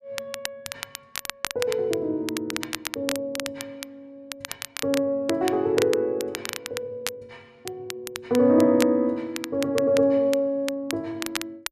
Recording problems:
crackle; vinyl, SNR 10 dB

